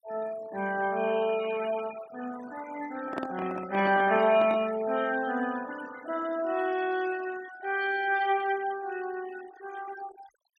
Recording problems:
noise reduction artefacts; signal-to-artefact ratio 17 dB
handling noise; from 3 to 4.5 s; peak -1 dB vs average level

